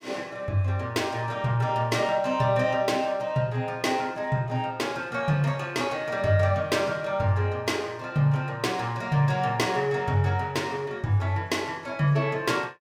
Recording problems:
none

